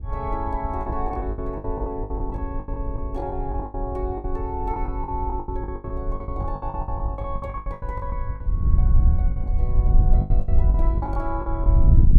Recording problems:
wind noise; below 68 Hz, SNR -6 dB
lost packets; 18% of the sound replaced, filled with the last packet

